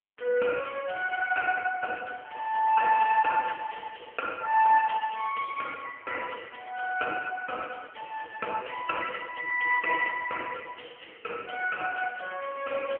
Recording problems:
telephone audio; 320 Hz to 2.5 kHz, AMR-NB

